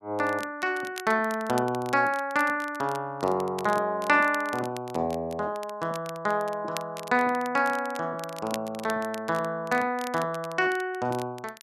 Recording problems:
crackling; vinyl, SNR 18 dB

